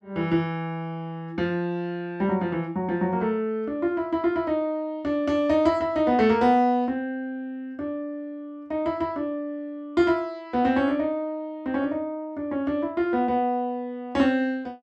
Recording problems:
none

